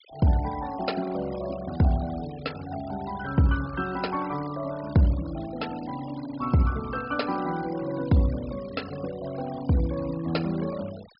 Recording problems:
treble cut off; nothing above 5.5 kHz
denoising artefacts; signal-to-artefact ratio 19 dB

